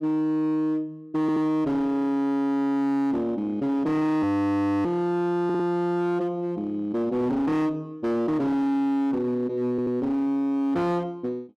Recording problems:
distortion; hard clipping, signal-to-distortion ratio 10 dB
stutter; at 1 s, at 5.5 s and at 9.5 s
audio freezing; at 4 s for 0.5 s

